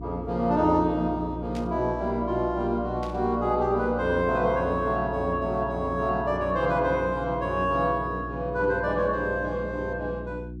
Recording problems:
electrical hum; 60 Hz, harmonics up to 360 Hz, SNR 10 dB
static burst; at 1.5 s and at 3 s; peak -13 dB vs average level

